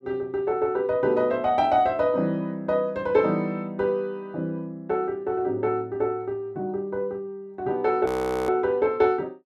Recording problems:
frozen audio; at 8 s

